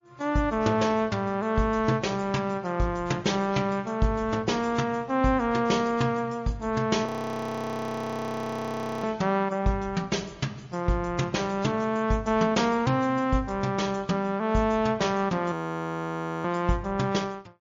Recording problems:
codec artefacts; MP3, log-spectral distance 2 dB, nothing above 17.1 kHz
audio freezing; at 7 s for 2 s and at 16 s for 1 s

